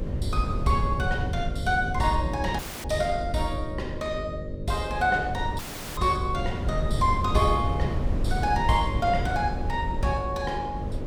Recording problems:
mains hum; 50 Hz, harmonics up to 600 Hz, SNR 12 dB
rumble; below 110 Hz, SNR 8 dB
wind on the microphone; below 140 Hz, SNR 6 dB
dropout; at 2.5 s and at 5.5 s

